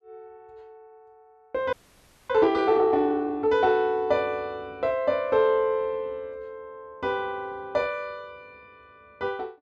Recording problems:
audio freezing; at 1.5 s for 0.5 s

